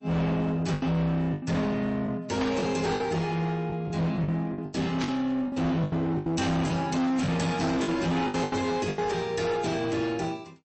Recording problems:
codec artefacts; MP3, log-spectral distance 2 dB, nothing above 8 kHz
distorted audio; hard clipping, uneven, signal-to-distortion ratio 6 dB
lost packets; 10% of the sound replaced, filled with the last packet
static burst; at 2.5 s and at 5 s; peak -3 dB vs average level

